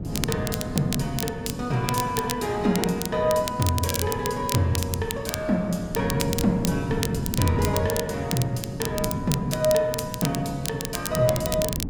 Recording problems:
wind on the microphone; below 250 Hz, SNR 7 dB
crackle; vinyl, SNR 7 dB

